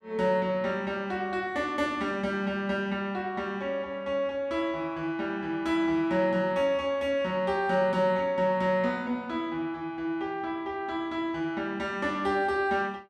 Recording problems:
none

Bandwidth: 13 kHz